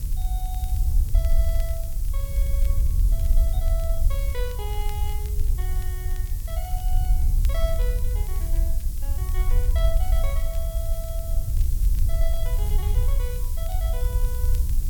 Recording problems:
hiss; SNR 2 dB
wind on the microphone; below 60 Hz, SNR -13 dB
crackling; vinyl, SNR 16 dB

